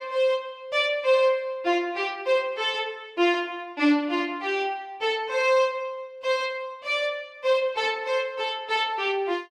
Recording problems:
none

